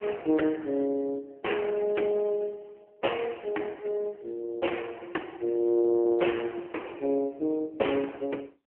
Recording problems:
telephone audio; 240 Hz to 3.2 kHz, AMR-NB

